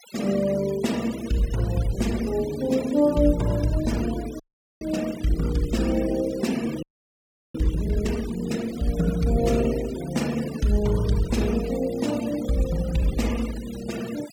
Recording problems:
denoising artefacts; signal-to-artefact ratio 16 dB
audio freezing; at 4.5 s and at 7 s for 0.5 s

